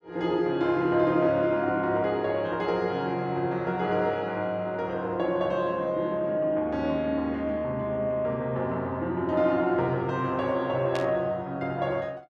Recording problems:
static burst; at 11 s; peak -6 dB vs average level

